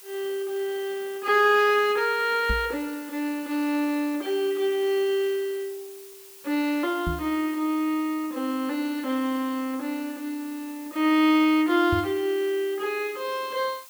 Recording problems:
background hiss; slope +2 dB per octave, SNR 19 dB
microphone bump; at 2.5 s, at 7 s and at 12 s; peak 0 dB vs average level

